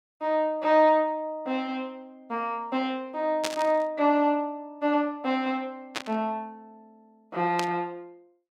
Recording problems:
static burst; at 3.5 s, at 6 s and at 7.5 s; peak +1 dB vs average level

